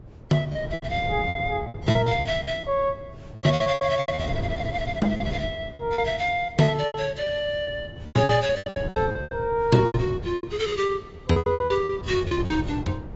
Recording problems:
lossy codec; AAC, log-spectral distance 2 dB, nothing above 7.6 kHz
wind noise; below 230 Hz, SNR 11 dB
lost packets; 18% of the sound replaced, filled with repeated pitch periods

